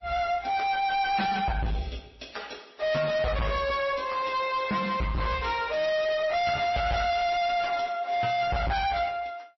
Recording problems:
lossy compression; MP3, then MP3, log-spectral distance 4 dB, nothing above 5.7 kHz
distortion; hard clipping, signal-to-distortion ratio 6 dB

